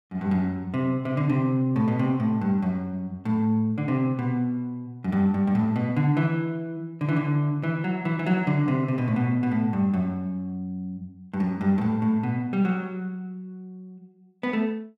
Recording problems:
none

